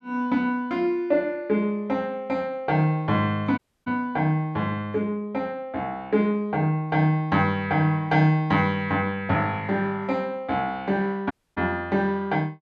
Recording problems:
dropout; at 3.5 s and at 11 s

